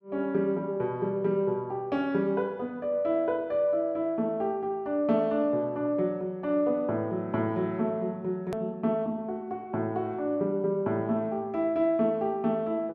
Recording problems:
click at an edit; at 8.5 s

